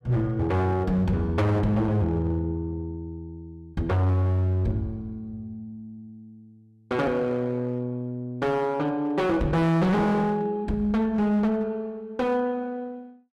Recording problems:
distorted audio; hard clipping, uneven, signal-to-distortion ratio 7 dB

